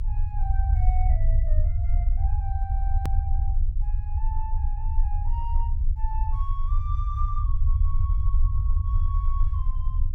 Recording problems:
low-frequency rumble; below 68 Hz, strongest tone 26 Hz, SNR -14 dB
hard cut with a click; at 3 s

